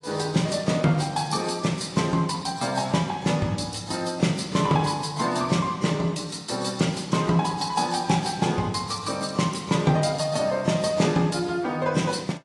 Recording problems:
codec artefacts; AAC, log-spectral distance 5 dB, nothing above 10.1 kHz

